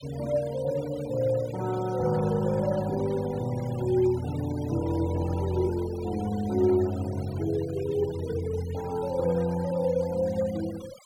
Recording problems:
denoising artefacts; signal-to-artefact ratio 18 dB

